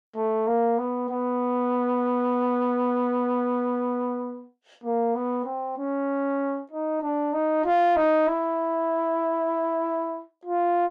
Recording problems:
distorted audio; soft clipping, signal-to-distortion ratio 10 dB

